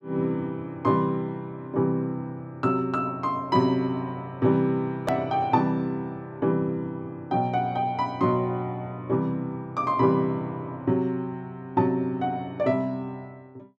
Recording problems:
click at an edit; at 5 s

